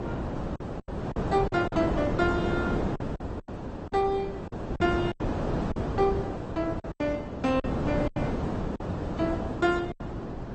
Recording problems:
codec artefacts; Opus, then MP2, log-spectral distance 2 dB, nothing above 7.8 kHz
hum; 60 Hz, harmonics up to 720 Hz, SNR 16 dB
wind noise; below 560 Hz, SNR 3 dB
packet loss; 8% of the sound replaced, filled with silence

